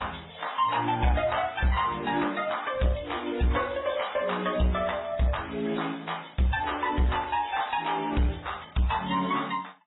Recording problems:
codec artefacts; MP3, then AAC, log-spectral distance 9 dB, nothing above 3.8 kHz
distortion; soft clipping, signal-to-distortion ratio 11 dB

